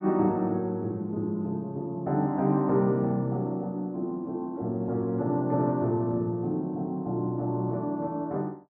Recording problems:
none

